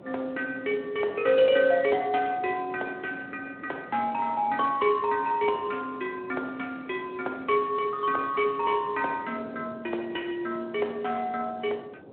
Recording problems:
phone line; 300 Hz to 3.6 kHz, Speex
wind noise; below 560 Hz, SNR 19 dB

